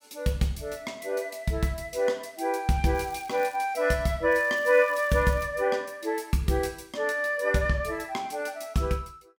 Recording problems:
crackle; at 3 s and from 4.5 to 5.5 s; loose cable, SNR 24 dB

